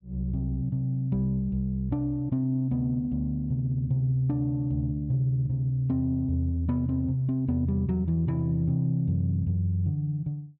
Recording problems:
none

